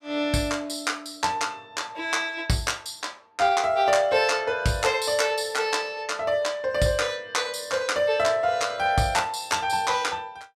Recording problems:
none

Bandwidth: 15 kHz